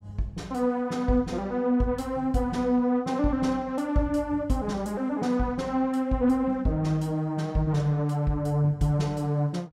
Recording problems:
none

